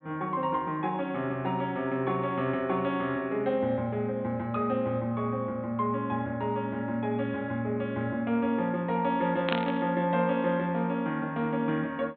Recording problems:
treble missing; nothing above 4 kHz
static burst; at 9.5 s; peak +2 dB vs average level

